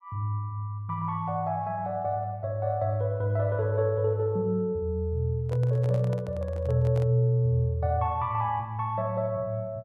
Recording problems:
handling noise; from 5.5 to 7 s; peak -11 dB vs average level

